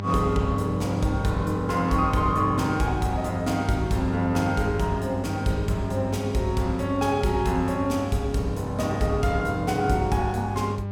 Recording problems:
hum; 50 Hz, harmonics up to 1 kHz, SNR 7 dB

